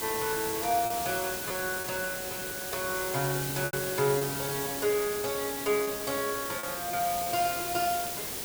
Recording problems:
background hiss; slope -2 dB per octave, SNR 2 dB
packet loss; 5% of the sound replaced, filled with repeated pitch periods

